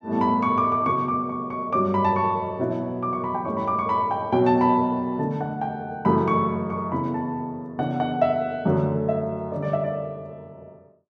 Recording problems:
none

